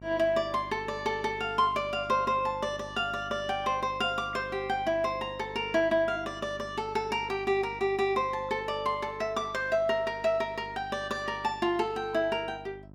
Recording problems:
electrical hum; 50 Hz, harmonics up to 1 kHz, SNR 19 dB

